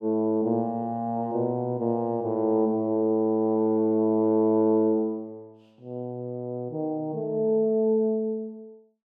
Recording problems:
none

